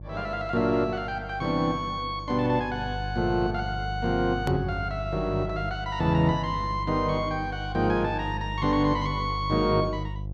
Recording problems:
hum; 50 Hz, harmonics up to 500 Hz, SNR 9 dB
hard cut with a click; at 4.5 s

